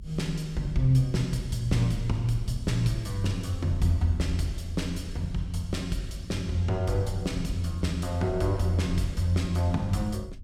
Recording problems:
low-frequency rumble; below 64 Hz, strongest tone 30 Hz, SNR 14 dB

